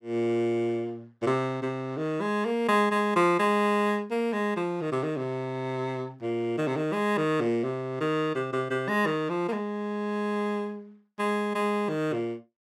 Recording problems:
none

